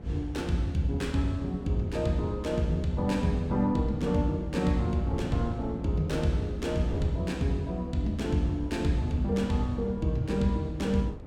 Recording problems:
wind noise; below 270 Hz, SNR 14 dB

